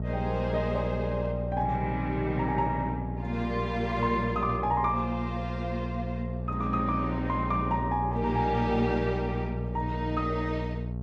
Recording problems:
hum; 60 Hz, harmonics up to 660 Hz, SNR 4 dB

